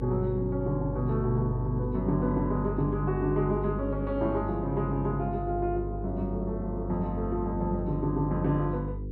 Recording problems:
hum; 50 Hz, harmonics up to 500 Hz, SNR 6 dB

